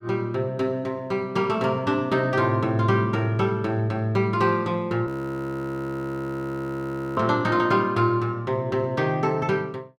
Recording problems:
frozen audio; at 5 s for 2 s

